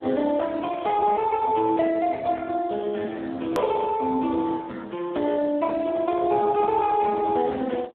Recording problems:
telephone audio; 220 Hz to 3.7 kHz, Speex
click at an edit; at 3.5 s

